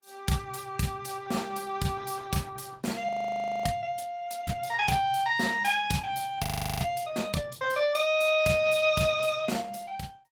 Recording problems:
lossy compression; Opus, log-spectral distance 4 dB
audio freezing; at 3 s for 0.5 s and at 6.5 s

